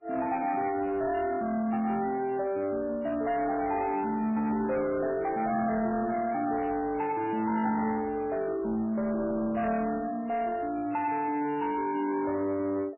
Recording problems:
lossy codec; MP3, log-spectral distance 3 dB, nothing above 2.4 kHz
distortion; soft clipping, signal-to-distortion ratio 11 dB

